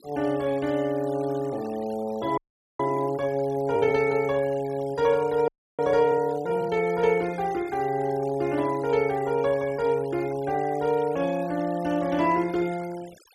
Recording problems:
noise reduction artefacts; signal-to-artefact ratio 21 dB
frozen audio; at 2.5 s and at 5.5 s

